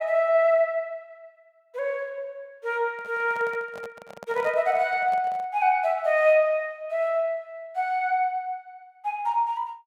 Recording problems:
microphone handling noise; from 3 to 5.5 s; peak -11 dB vs average level

